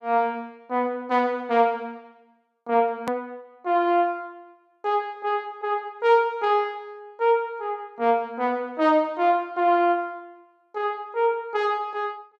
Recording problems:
click at an edit; at 3 s

